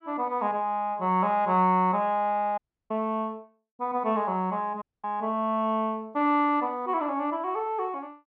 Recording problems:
dropout; at 2.5 s and at 5 s

